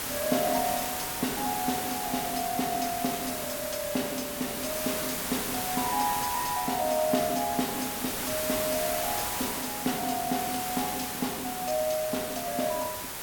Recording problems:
hiss; slope -2 dB per octave, SNR 1 dB

